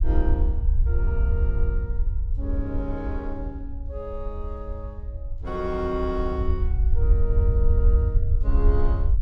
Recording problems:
rumble; below 70 Hz, SNR -7 dB

